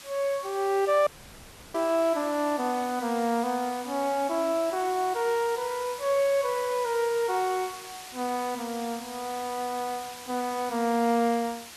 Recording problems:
background hiss; slope +1 dB per octave, SNR 14 dB
audio cutting out; at 1 s for 0.5 s

